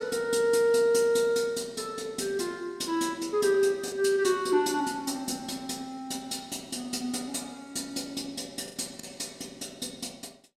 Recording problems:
packet loss; 1.6% of the sound replaced, filled with the last packet

